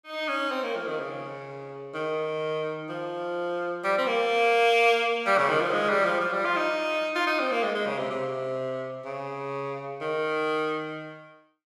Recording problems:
none

